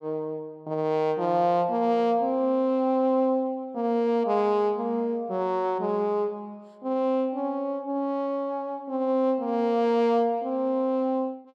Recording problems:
none

